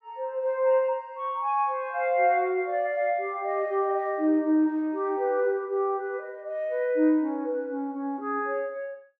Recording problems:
none

